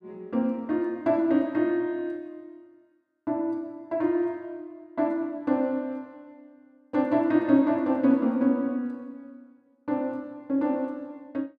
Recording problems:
none

